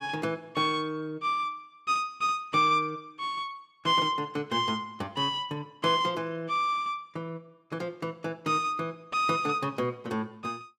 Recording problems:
none

